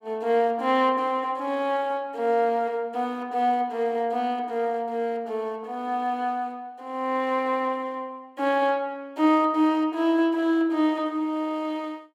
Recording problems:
none

